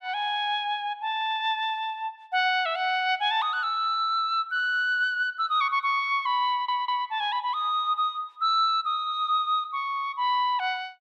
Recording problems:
stutter; at 6.5 s

